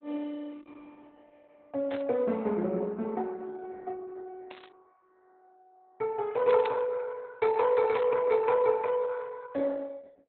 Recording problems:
codec artefacts; Opus, log-spectral distance 3 dB, nothing above 4 kHz
static burst; 4 times, first at 2 s; peak -11 dB vs average level

